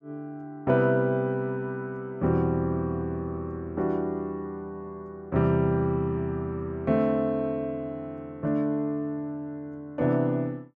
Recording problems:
none

